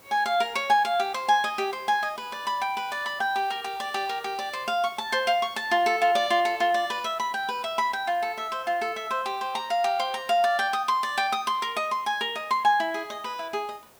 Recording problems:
hiss; slope -4 dB per octave, SNR 26 dB

